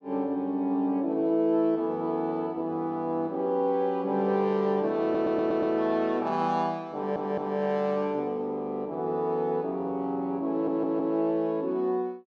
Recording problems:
audio stuttering; at 5 s, at 7 s and at 11 s

